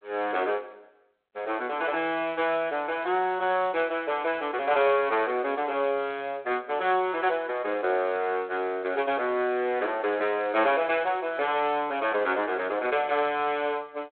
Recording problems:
phone line; 280 Hz to 3.9 kHz, G.726

